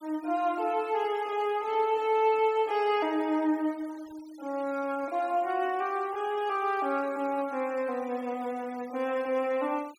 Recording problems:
denoising artefacts; signal-to-artefact ratio 24 dB

